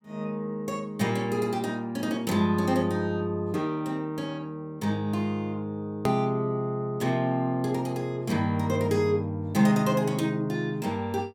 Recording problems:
hard cut with a click; at 6 s

